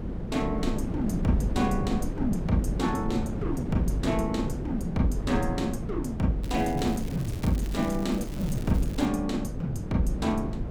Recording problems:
wind on the microphone; below 240 Hz, SNR 4 dB
crackle; from 6.5 to 9 s; loose cable, SNR 18 dB

